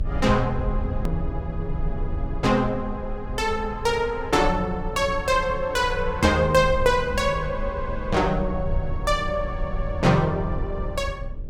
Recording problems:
electrical hum; 50 Hz, harmonics up to 600 Hz, SNR 23 dB
low-frequency rumble; below 70 Hz, SNR 9 dB
hard cut with a click; at 1 s

